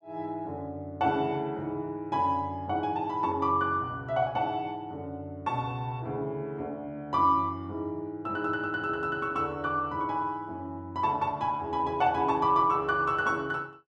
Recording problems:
none

